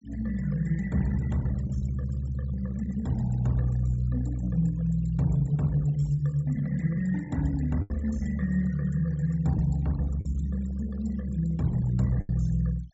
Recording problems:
low-pass filter; nothing above 7.6 kHz
noise reduction artefacts; signal-to-artefact ratio 24 dB
lost packets; 1.9% of the sound replaced, filled with the last packet

